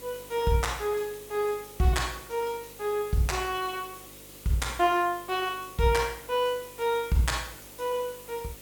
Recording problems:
hum; 50 Hz, harmonics up to 550 Hz, SNR 25 dB
background hiss; slope -1 dB per octave, SNR 17 dB

